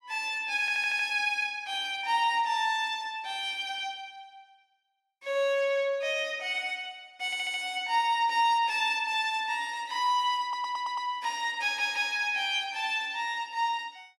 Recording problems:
stutter; 4 times, first at 0.5 s

